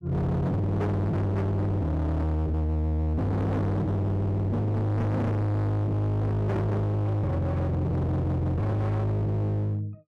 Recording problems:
distortion; hard clipping, signal-to-distortion ratio 6 dB

